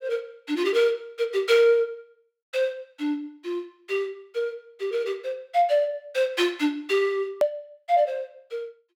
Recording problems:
hard cut with a click; at 7.5 s

